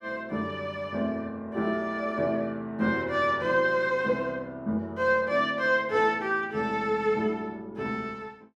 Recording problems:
none

